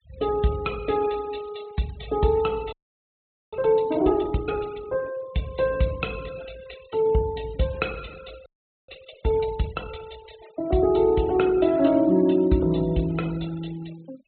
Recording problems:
treble missing; nothing above 4 kHz
noise reduction artefacts; signal-to-artefact ratio 21 dB
frozen audio; at 2.5 s for 1 s and at 8.5 s

